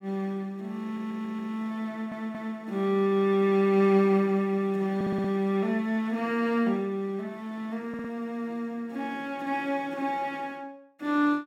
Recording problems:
audio stuttering; 4 times, first at 1 s

